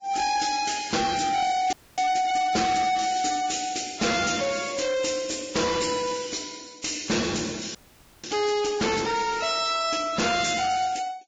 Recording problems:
codec artefacts; Vorbis, log-spectral distance 9 dB, nothing above 7.6 kHz
distortion; soft clipping, signal-to-distortion ratio 7 dB
audio freezing; at 1.5 s and at 8 s

